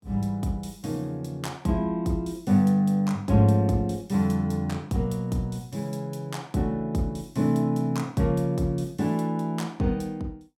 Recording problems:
none

